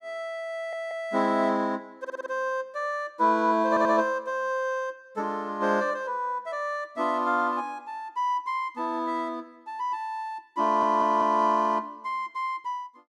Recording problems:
audio stuttering; 4 times, first at 0.5 s

